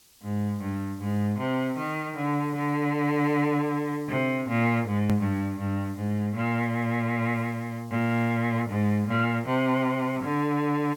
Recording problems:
background hiss; SNR 27 dB
click at an edit; at 5 s

